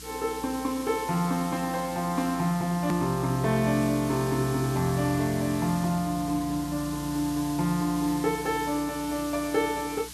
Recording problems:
hum; 60 Hz, harmonics up to 300 Hz, SNR 19 dB
hiss; slope +4 dB per octave, SNR 13 dB
hard cut with a click; at 3 s

